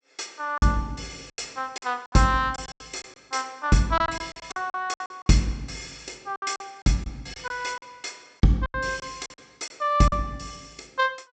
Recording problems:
low-pass filter; nothing above 8 kHz
lost packets; 12% of the sound replaced, filled with silence

